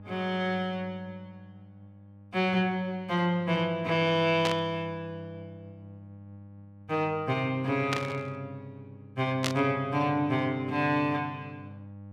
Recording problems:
mains hum; 50 Hz, harmonics up to 800 Hz, SNR 19 dB
static burst; at 4.5 s, at 8 s and at 9.5 s; peak +2 dB vs average level

